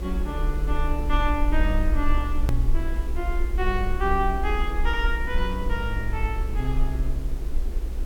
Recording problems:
hiss; SNR 12 dB
rumble; below 56 Hz, SNR -1 dB
edit click; at 2.5 s

